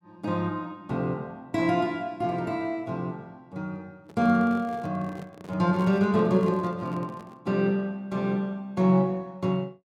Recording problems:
microphone handling noise; from 4 to 7.5 s; peak -8 dB vs average level

